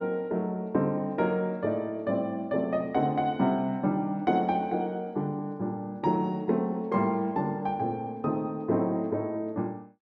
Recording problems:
none

